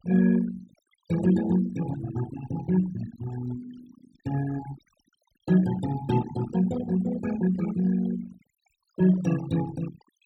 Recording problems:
denoising artefacts; signal-to-artefact ratio 15 dB

